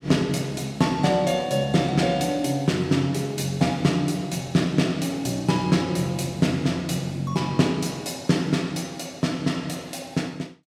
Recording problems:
none

